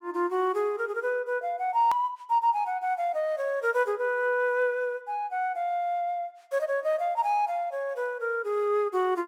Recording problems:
hard cut with a click; at 2 s

